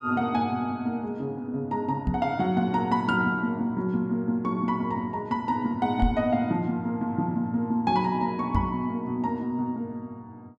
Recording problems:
microphone bump; at 2 s, at 6 s and at 8.5 s; peak +4 dB vs average level

